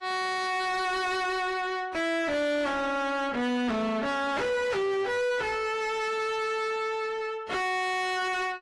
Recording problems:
codec artefacts; AAC, log-spectral distance 2 dB, nothing above 11 kHz
distorted audio; soft clipping, signal-to-distortion ratio 5 dB

